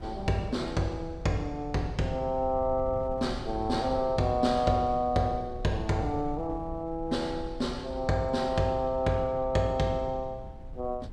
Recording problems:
wind on the microphone; below 100 Hz, SNR 14 dB

